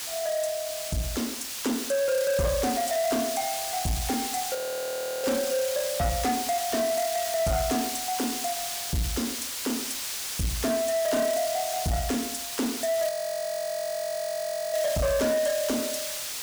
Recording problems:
distortion; soft clipping, signal-to-distortion ratio 12 dB
hiss; slope +2 dB per octave, SNR 3 dB
frozen audio; at 4.5 s for 0.5 s and at 13 s for 1.5 s

